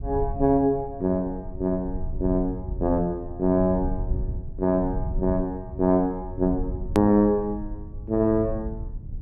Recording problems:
rumble; below 88 Hz, SNR 10 dB
hard cut with a click; at 7 s

